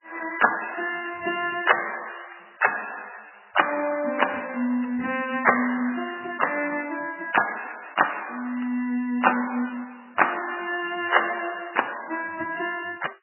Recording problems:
lossy codec; MP3, log-spectral distance 10 dB, nothing above 2.9 kHz

